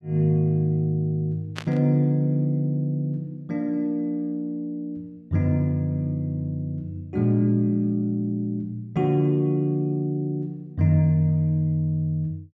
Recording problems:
static burst; at 1.5 s; peak -4 dB vs average level

